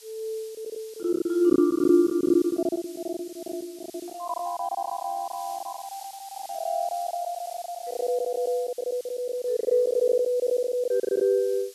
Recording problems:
hiss; slope +4 dB per octave, SNR 19 dB
packet loss; 17% of the sound replaced, filled with silence

